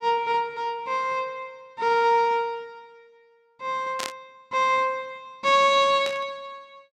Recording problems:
burst of static; at 4 s and at 6 s; peak -4 dB vs average level

